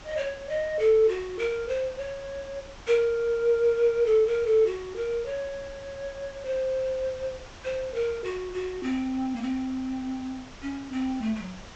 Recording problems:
treble missing; nothing above 8 kHz
hiss; slope -3 dB per octave, SNR 19 dB

